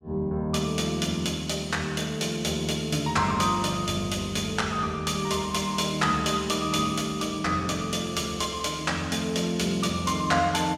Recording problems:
none

